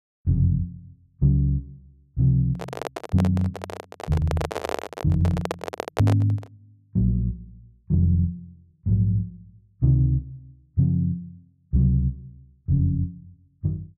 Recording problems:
handling noise; from 2.5 to 6.5 s; peak +1 dB vs average level

